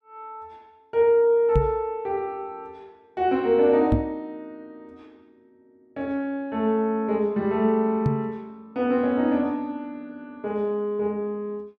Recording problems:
microphone bump; at 1.5 s, at 4 s and at 8 s; peak +6 dB vs average level

